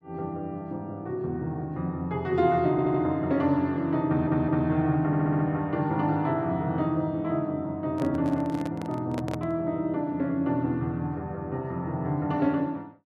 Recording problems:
stutter; at 2.5 s, at 4 s and at 5 s
handling noise; from 8 to 9.5 s; peak -4 dB vs average level

